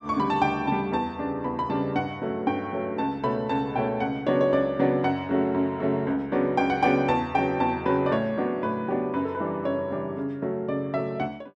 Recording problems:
none

